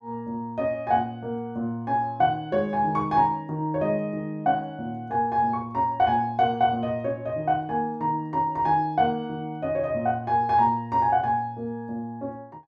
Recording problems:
none

